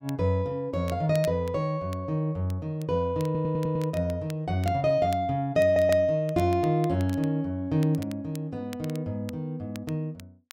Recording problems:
crackling; vinyl, SNR 22 dB
stutter; at 3.5 s and at 5.5 s

